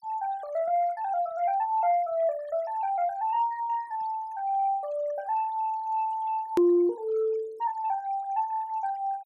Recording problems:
noise reduction artefacts; signal-to-artefact ratio 24 dB
hard cut with a click; at 6.5 s

